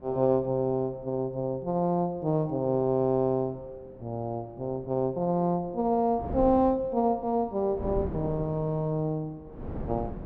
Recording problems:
wind noise; below 360 Hz, SNR 15 dB

